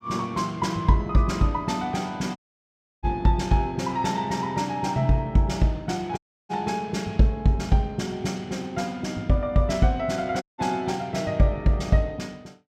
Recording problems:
audio cutting out; at 2.5 s for 0.5 s, at 6 s and at 10 s

